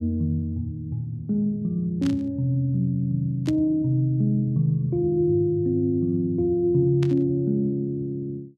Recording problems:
static burst; at 2 s, at 3.5 s and at 7 s; peak -10 dB vs average level

